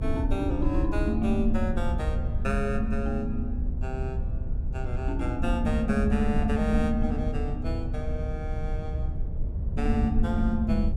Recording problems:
rumble; below 82 Hz, SNR 1 dB

